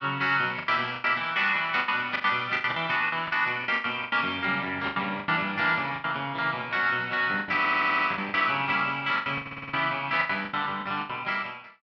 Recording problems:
lost packets; 14% of the sound replaced, filled with the last packet
stutter; at 7.5 s and at 9.5 s

